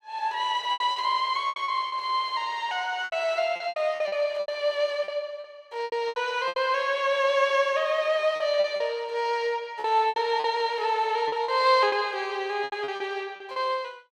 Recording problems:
lost packets; 12% of the sound replaced, filled with repeated pitch periods

